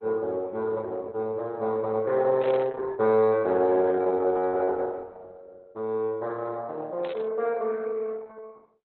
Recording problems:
lossy compression; Opus, log-spectral distance 2 dB, nothing above 4.1 kHz
static burst; at 2.5 s and at 7 s; peak -10 dB vs average level

